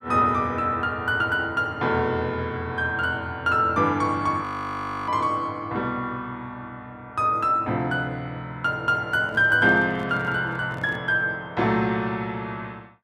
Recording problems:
frozen audio; at 4.5 s for 0.5 s
handling noise; from 9 to 11 s; peak -12 dB vs average level

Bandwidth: 14 kHz